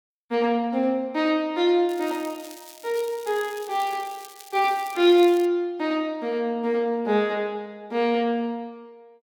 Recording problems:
crackle; from 2 to 5.5 s; loose cable, SNR 20 dB

